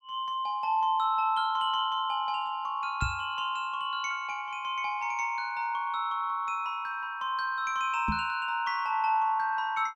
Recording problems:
knock on the microphone; at 3 s and at 8 s; peak +1 dB vs average level

